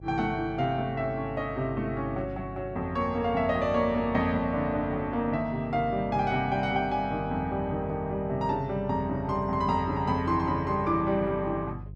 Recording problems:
electrical hum; 50 Hz, harmonics up to 350 Hz, SNR 15 dB

